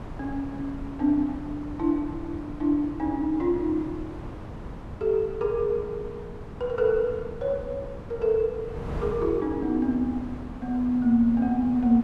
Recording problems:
wind noise; below 370 Hz, SNR 12 dB

